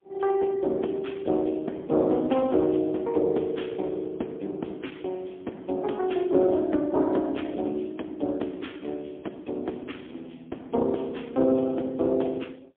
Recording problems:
phone line; 220 Hz to 3.4 kHz, AMR-NB, then MP3

